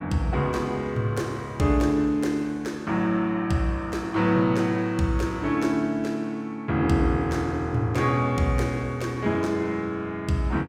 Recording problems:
none

